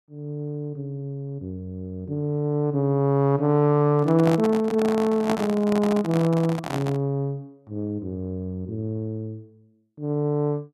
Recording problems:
handling noise; from 4 to 7 s; peak +1 dB vs average level

